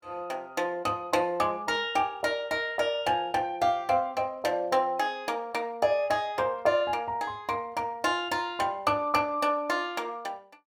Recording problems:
none

